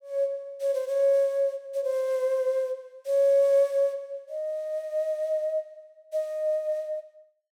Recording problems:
none

